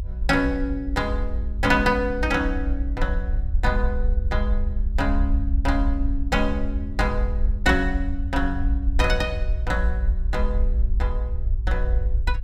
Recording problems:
low-frequency rumble; below 58 Hz, SNR 0 dB

